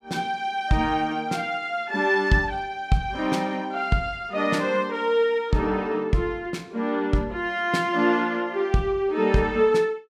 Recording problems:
none

